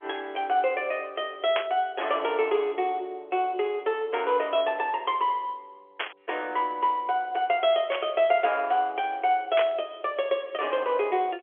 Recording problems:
phone line; 320 Hz to 3.4 kHz, G.711
burst of static; 4 times, first at 1.5 s; peak +2 dB vs average level

